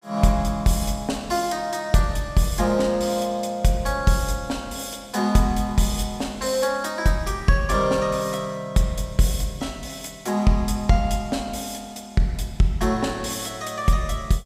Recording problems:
none

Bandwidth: 15.5 kHz